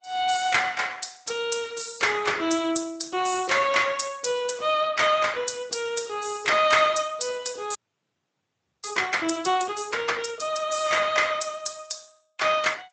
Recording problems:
lossy codec; Vorbis, then Speex, log-spectral distance 7 dB, nothing above 8 kHz
audio freezing; at 8 s for 1 s

